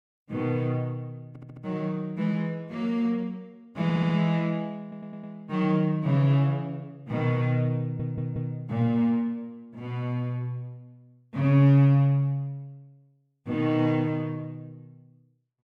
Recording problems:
stutter; 4 times, first at 1.5 s

